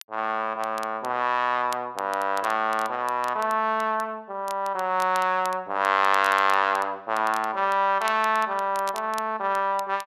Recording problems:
crackle; vinyl, SNR 20 dB

